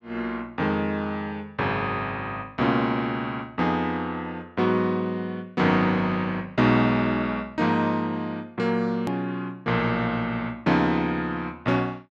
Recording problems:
click at an edit; at 9 s

